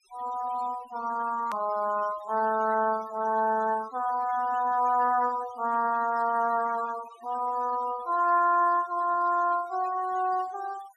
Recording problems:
noise reduction artefacts; signal-to-artefact ratio 20 dB
edit click; at 1.5 s

